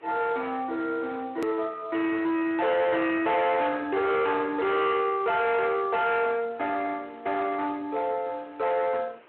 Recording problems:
telephone audio; 300 Hz to 3.7 kHz, Speex
distorted audio; hard clipping, signal-to-distortion ratio 8 dB
hiss; SNR 27 dB
click at an edit; at 1.5 s

